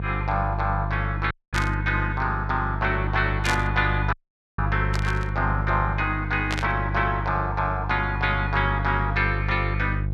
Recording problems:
hum; 50 Hz, harmonics up to 500 Hz, SNR 3 dB
dropout; at 1.5 s and at 4 s
static burst; 4 times, first at 1.5 s; peak +1 dB vs average level

